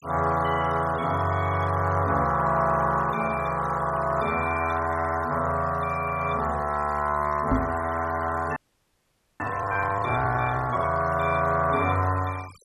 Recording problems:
noise reduction artefacts; signal-to-artefact ratio 21 dB
microphone thump; at 7.5 s; peak +4 dB vs average level
audio freezing; at 8.5 s for 1 s

